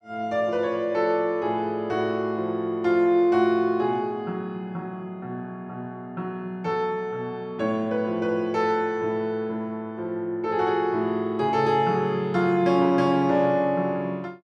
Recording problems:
none

